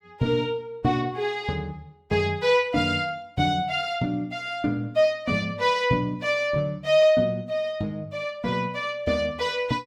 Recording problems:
none

